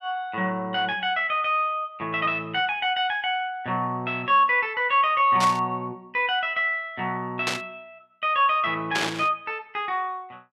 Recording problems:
static burst; at 5.5 s, at 7.5 s and at 9 s; peak +1 dB vs average level

